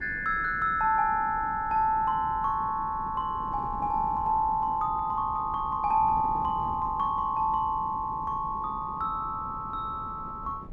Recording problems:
wind on the microphone; below 280 Hz, SNR 16 dB

